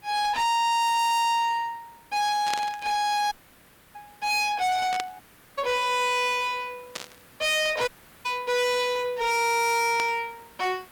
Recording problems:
distorted audio; hard clipping, signal-to-distortion ratio 6 dB
background hiss; SNR 27 dB
burst of static; 4 times, first at 2.5 s; peak -1 dB vs average level
dropout; at 3.5 s for 0.5 s, at 5 s and at 8 s

